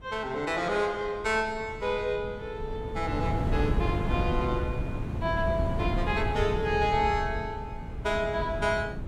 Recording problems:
wind on the microphone; below 190 Hz, SNR 3 dB

